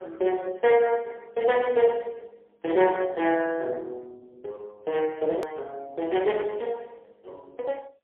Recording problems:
telephone audio; 340 Hz to 3 kHz, AMR-NB, then MP3
edit click; at 5.5 s

